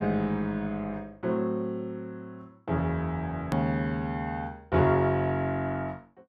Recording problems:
edit click; at 3.5 s

